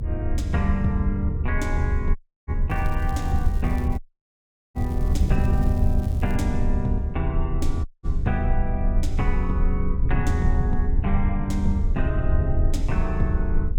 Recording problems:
rumble; below 74 Hz, strongest tone 22 Hz, SNR 1 dB
wind on the microphone; below 100 Hz, SNR 1 dB
dropout; at 2 s, at 4 s for 1 s and at 8 s
crackle; from 2.5 to 6.5 s; loose cable, SNR 22 dB

